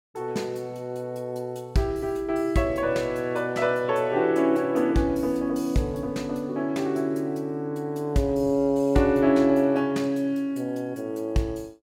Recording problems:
none

